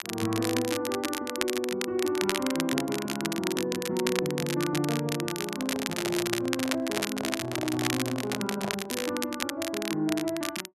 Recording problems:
crackle; vinyl, SNR 3 dB
microphone handling noise; from 5.5 to 9 s; peak -1 dB vs average level

